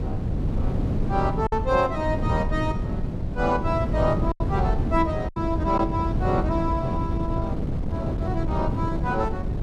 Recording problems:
wind noise; below 200 Hz, SNR 1 dB
lost packets; 3% of the sound replaced, filled with silence

